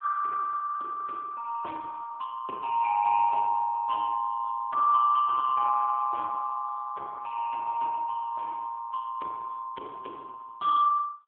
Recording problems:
telephone audio; 300 Hz to 2 kHz, AMR-NB

